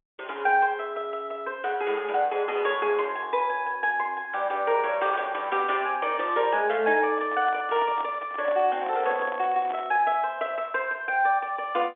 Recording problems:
phone line; 300 Hz to 3.5 kHz, G.711
microphone handling noise; from 7 to 10 s; peak -9 dB vs average level

